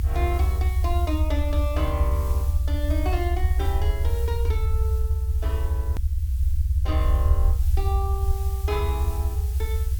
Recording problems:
background hiss; slope +3 dB per octave, SNR 12 dB
rumble; below 78 Hz, SNR -8 dB
click at an edit; at 6 s

